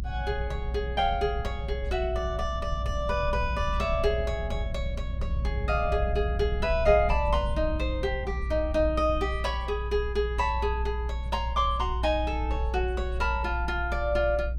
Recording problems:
low-frequency rumble; below 62 Hz, strongest tone 58 Hz, SNR 3 dB

